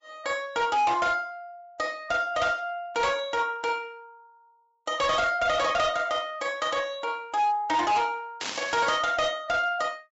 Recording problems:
treble missing; nothing above 7.6 kHz
codec artefacts; Vorbis, log-spectral distance 2 dB
distortion; hard clipping, signal-to-distortion ratio 12 dB
burst of static; at 8.5 s; peak -2 dB vs average level

